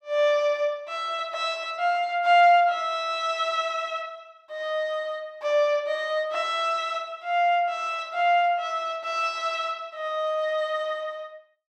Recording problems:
none

